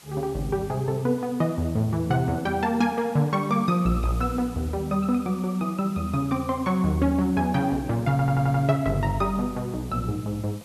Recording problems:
background hiss; slope -1 dB per octave, SNR 23 dB
audio stuttering; at 8 s

